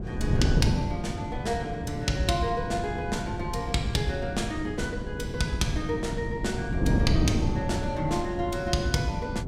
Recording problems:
wind noise; below 230 Hz, SNR 1 dB

